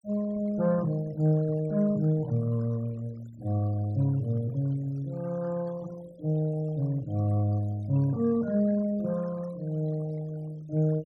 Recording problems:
noise reduction artefacts; signal-to-artefact ratio 23 dB

